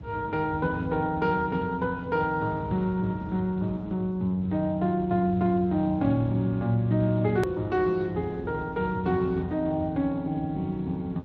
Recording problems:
codec artefacts; Speex, log-spectral distance 2 dB, nothing above 13.1 kHz
low-frequency rumble; below 210 Hz, SNR 13 dB
click at an edit; at 7.5 s

